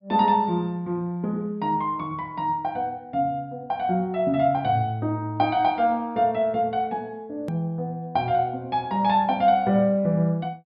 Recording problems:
treble missing; nothing above 5.5 kHz
edit click; at 7.5 s

